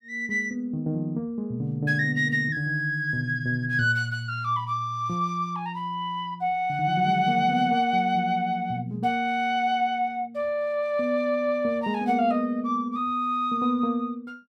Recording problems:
none

